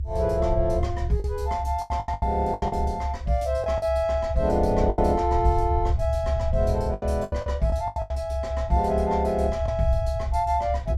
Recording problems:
low-frequency rumble; below 78 Hz, strongest tone 70 Hz, SNR 4 dB
lost packets; 9% of the sound replaced, filled with the last packet

